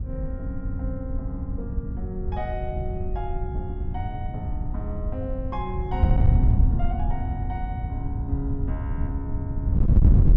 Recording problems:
distortion; hard clipping, uneven, signal-to-distortion ratio 8 dB
wind noise; below 110 Hz, SNR -8 dB

